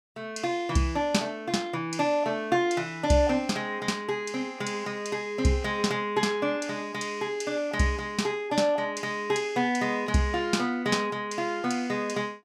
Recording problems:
none

